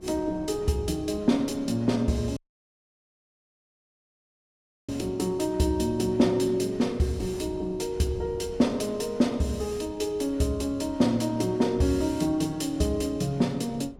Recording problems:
wind on the microphone; below 360 Hz, SNR 21 dB
dropout; at 2.5 s for 2.5 s

